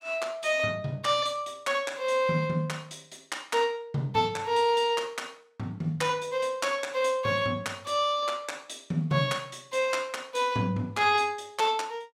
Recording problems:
none

